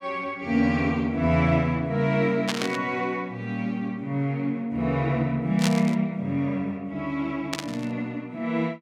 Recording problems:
burst of static; at 2.5 s, at 5.5 s and at 7.5 s; peak +3 dB vs average level

